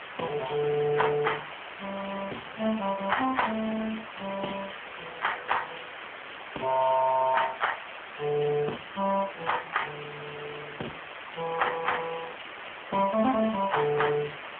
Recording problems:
phone line; 240 Hz to 3.3 kHz, AMR-NB
background hiss; SNR 11 dB

